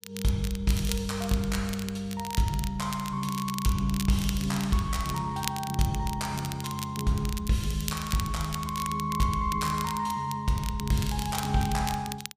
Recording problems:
crackling; vinyl, SNR 10 dB

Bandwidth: 15 kHz